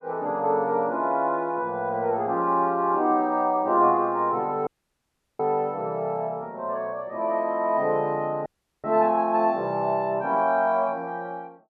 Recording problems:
dropout; at 4.5 s for 0.5 s and at 8.5 s

